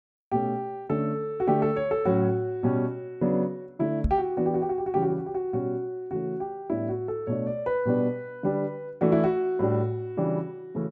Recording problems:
knock on the microphone; at 4 s; peak +5 dB vs average level

